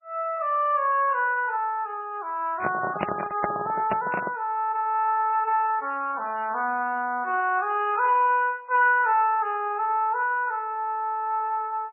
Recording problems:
codec artefacts; MP3, log-spectral distance 2 dB, nothing above 2.5 kHz
handling noise; from 2.5 to 4.5 s; peak +2 dB vs average level

